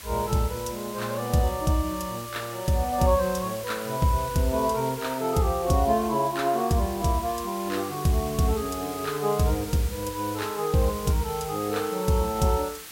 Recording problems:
hiss; slope +1 dB per octave, SNR 13 dB

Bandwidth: 16 kHz